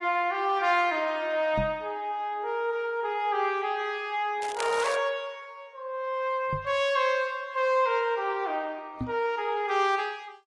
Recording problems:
lossy compression; AAC, then AAC, log-spectral distance 2 dB, nothing above 10.1 kHz
microphone thump; at 1.5 s, at 6.5 s and at 9 s; peak -1 dB vs average level
crackling; at 4.5 s; loose cable, SNR 13 dB

